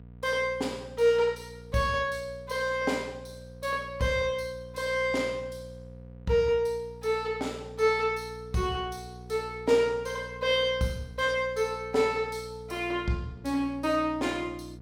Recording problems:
hum; 60 Hz, harmonics up to 720 Hz, SNR 18 dB

